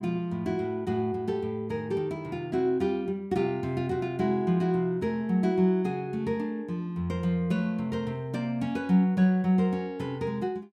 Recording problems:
none

